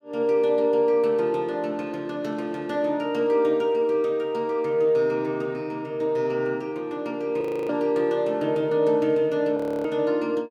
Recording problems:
frozen audio; at 7.5 s and at 9.5 s

